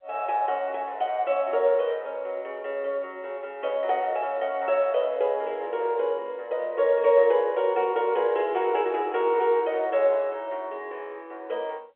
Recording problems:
phone line; 340 Hz to 3.3 kHz, G.711

